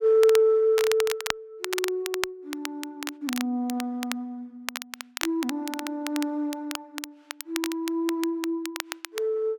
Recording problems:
crackle; vinyl, SNR 8 dB

